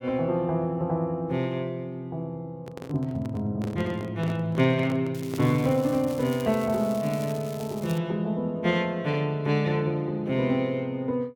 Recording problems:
microphone handling noise; from 2.5 to 6 s; peak -6 dB vs average level
crackling; from 5 to 8 s; loose cable, SNR 18 dB

